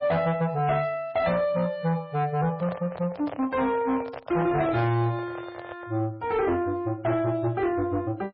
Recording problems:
lossy codec; MP3, log-spectral distance 2 dB
distortion; soft clipping, signal-to-distortion ratio 10 dB
handling noise; from 2.5 to 6 s; peak -6 dB vs average level

